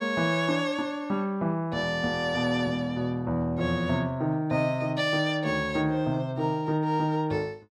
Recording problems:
none

